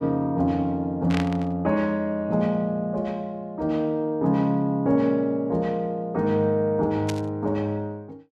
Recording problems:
static burst; at 1 s and at 7 s; peak -3 dB vs average level

